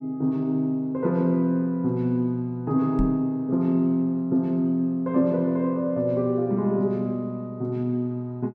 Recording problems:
microphone thump; at 3 s; peak 0 dB vs average level

